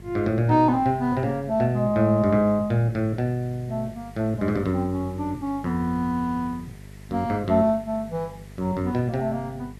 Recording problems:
hum; 50 Hz, harmonics up to 650 Hz, SNR 20 dB
background hiss; SNR 29 dB

